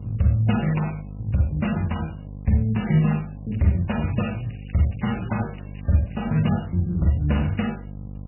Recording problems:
lossy compression; MP3, log-spectral distance 7 dB, nothing above 2.9 kHz
electrical hum; 50 Hz, harmonics up to 550 Hz, SNR 14 dB
crackling; from 3.5 to 7.5 s; loose cable, SNR 27 dB

